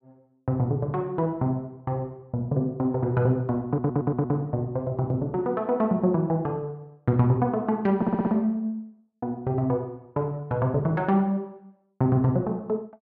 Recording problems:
stutter; at 3.5 s and at 8 s

